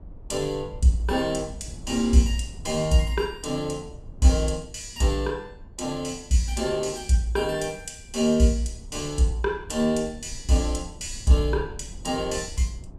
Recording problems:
rumble; below 98 Hz, SNR 18 dB

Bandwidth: 14.5 kHz